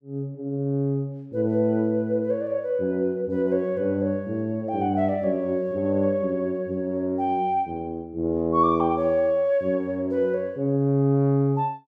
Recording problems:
none

